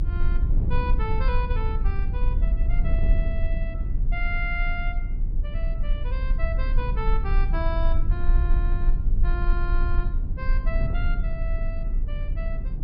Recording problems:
treble cut off; nothing above 5.5 kHz
rumble; below 44 Hz, strongest tone 28 Hz, SNR -8 dB
wind on the microphone; below 150 Hz, SNR 1 dB

